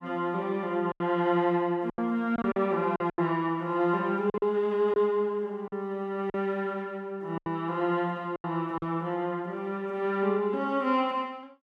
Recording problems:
lost packets; 6% of the sound replaced, filled with silence

